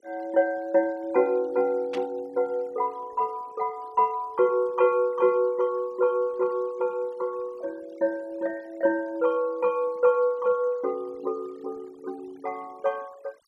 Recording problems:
denoising artefacts; signal-to-artefact ratio 27 dB
burst of static; at 2 s; peak -8 dB vs average level

